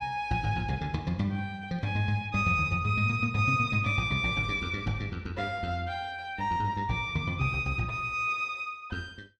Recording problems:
none

